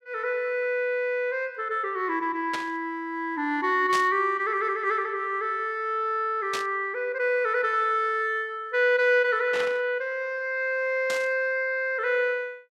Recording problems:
burst of static; 5 times, first at 2.5 s; peak -2 dB vs average level

